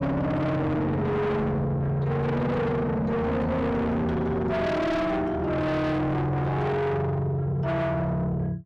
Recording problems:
distorted audio; soft clipping, signal-to-distortion ratio 6 dB

